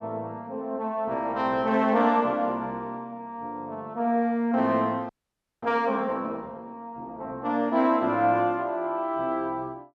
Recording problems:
frozen audio; at 5 s for 0.5 s

